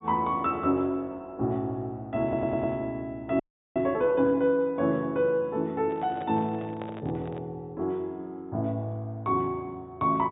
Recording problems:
treble cut off; nothing above 4 kHz
stutter; at 2 s
frozen audio; at 3.5 s
microphone handling noise; from 6 to 7.5 s; peak -8 dB vs average level

